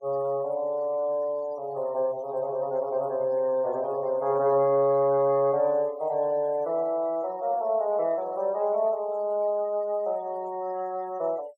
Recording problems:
noise reduction artefacts; signal-to-artefact ratio 26 dB

